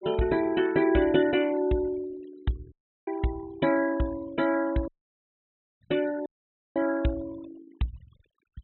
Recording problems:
low-pass filter; nothing above 4 kHz
denoising artefacts; signal-to-artefact ratio 21 dB
dropout; at 2.5 s, at 5 s for 1 s and at 6.5 s for 0.5 s

